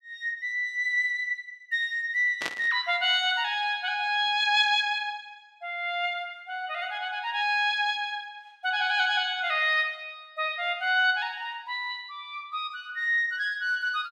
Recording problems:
burst of static; at 2.5 s; peak -2 dB vs average level

